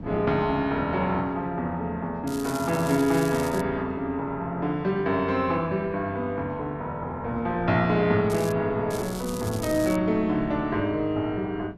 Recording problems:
wind on the microphone; below 290 Hz, SNR 18 dB
crackling; from 2.5 to 3.5 s, at 8.5 s and from 9 to 10 s; loose cable, SNR 14 dB

